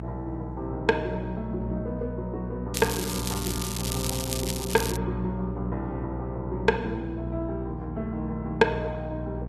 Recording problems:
lossy compression; Opus, log-spectral distance 3 dB, nothing above 13.3 kHz
hum; 60 Hz, harmonics up to 660 Hz, SNR 4 dB
crackle; from 2.5 to 5 s; loose cable, SNR 2 dB

